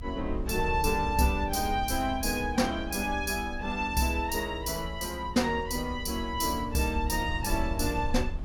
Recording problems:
low-frequency rumble; below 78 Hz, SNR 9 dB

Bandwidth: 17.5 kHz